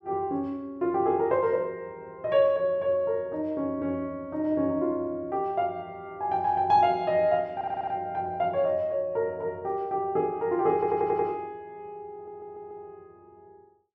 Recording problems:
stutter; at 7.5 s, at 11 s and at 12 s

